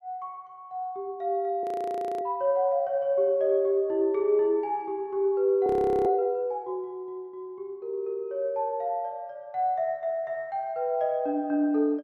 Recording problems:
frozen audio; at 1.5 s for 0.5 s and at 5.5 s

